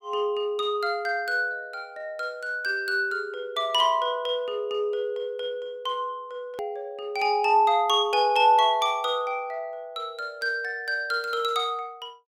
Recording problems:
edit click; at 6.5 s

